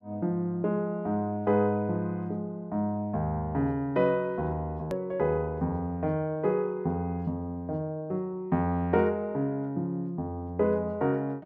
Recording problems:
edit click; at 5 s

